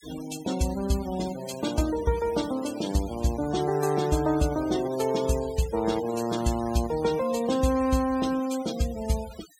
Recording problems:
denoising artefacts; signal-to-artefact ratio 15 dB

